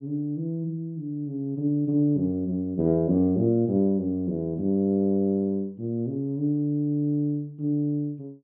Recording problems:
none

